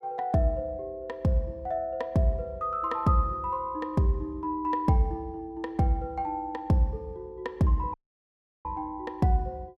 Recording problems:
dropout; at 8 s for 0.5 s

